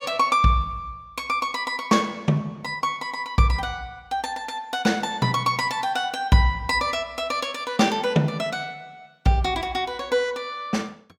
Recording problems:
none

